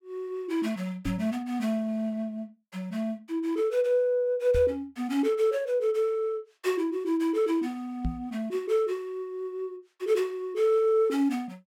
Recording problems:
knock on the microphone; at 1 s, at 4.5 s and at 8 s; peak +1 dB vs average level

